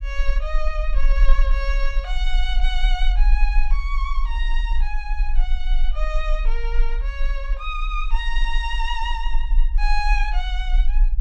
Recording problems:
low-frequency rumble; below 38 Hz, strongest tone 20 Hz, SNR -5 dB

